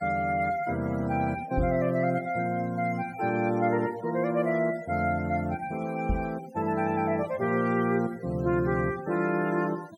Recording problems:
noise reduction artefacts; signal-to-artefact ratio 21 dB
knock on the microphone; at 1.5 s and at 6 s; peak +2 dB vs average level

